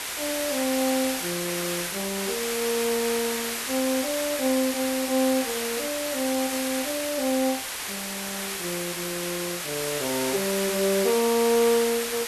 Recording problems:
background hiss; slope 0 dB per octave, SNR 2 dB

